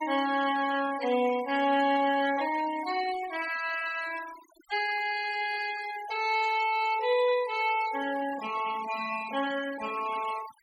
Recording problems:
noise reduction artefacts; signal-to-artefact ratio 14 dB

